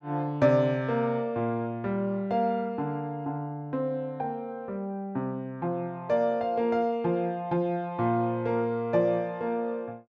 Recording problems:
none

